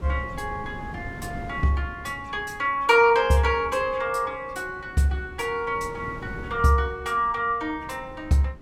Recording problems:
wind on the microphone; below 320 Hz, SNR 17 dB

